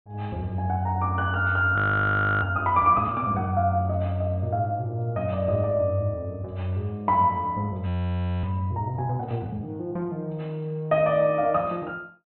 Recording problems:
treble cut off; nothing above 4 kHz
frozen audio; at 2 s for 0.5 s and at 8 s for 0.5 s

